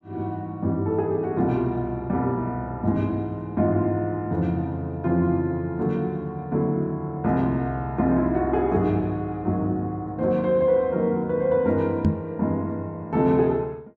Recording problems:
knock on the microphone; at 12 s; peak +7 dB vs average level

